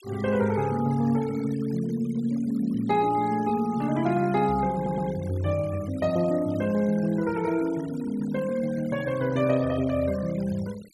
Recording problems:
noise reduction artefacts; signal-to-artefact ratio 21 dB
stutter; at 5 s

